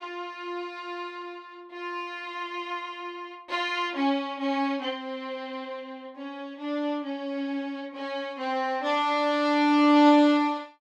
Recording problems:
none

